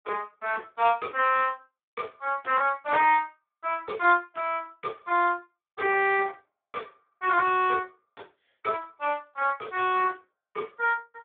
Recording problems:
telephone audio; 320 Hz to 3.6 kHz, Speex

